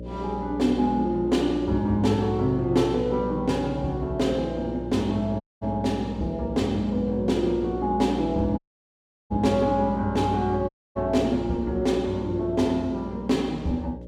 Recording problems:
mains hum; 60 Hz, harmonics up to 600 Hz, SNR 11 dB
dropout; at 5.5 s, at 8.5 s for 0.5 s and at 11 s

